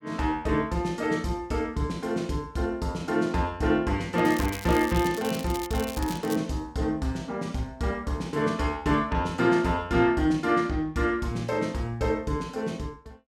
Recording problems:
crackling; from 4 to 6.5 s; loose cable, SNR 13 dB

